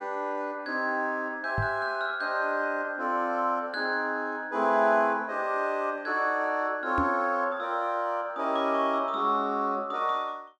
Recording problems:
microphone thump; at 1.5 s and at 7 s; peak +1 dB vs average level

